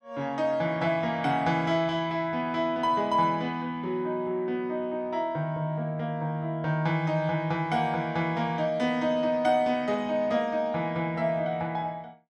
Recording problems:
none

